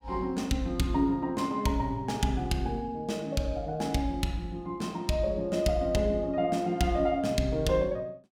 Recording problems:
none

